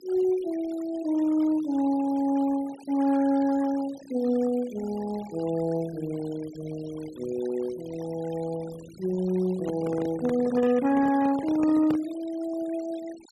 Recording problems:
denoising artefacts; signal-to-artefact ratio 20 dB
handling noise; from 9.5 to 12 s; peak -3 dB vs average level

